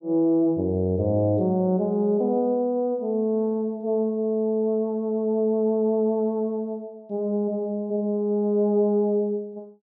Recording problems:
none

